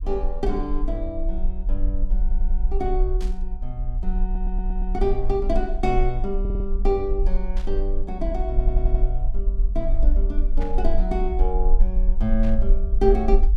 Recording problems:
rumble; below 40 Hz, strongest tone 22 Hz, SNR -2 dB
stutter; 4 times, first at 2 s
burst of static; 4 times, first at 3 s; peak -10 dB vs average level

